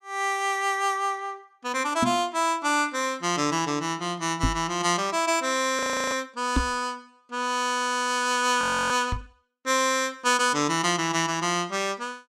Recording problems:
microphone bump; 4 times, first at 2 s; peak +4 dB vs average level
audio freezing; at 6 s and at 8.5 s

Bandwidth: 15 kHz